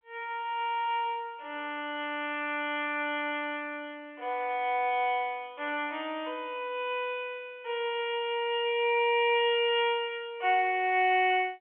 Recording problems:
phone line; 320 Hz to 3.4 kHz, G.711

